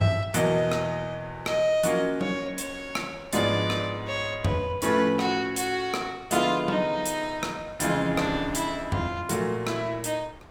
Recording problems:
wind on the microphone; below 1 kHz, SNR 22 dB

